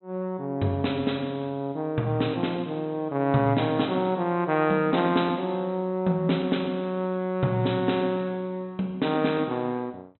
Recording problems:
treble missing; nothing above 4 kHz

